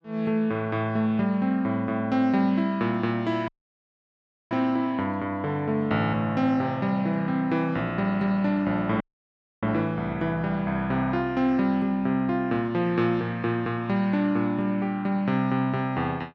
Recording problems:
audio cutting out; at 3.5 s for 1 s and at 9 s for 0.5 s

